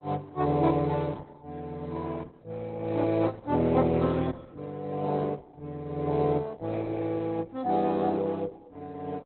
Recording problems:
codec artefacts; Opus, log-spectral distance 3 dB, nothing above 4 kHz

